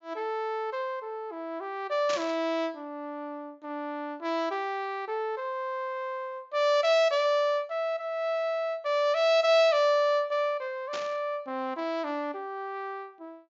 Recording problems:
treble missing; nothing above 7.4 kHz
burst of static; at 2 s and at 11 s; peak -3 dB vs average level

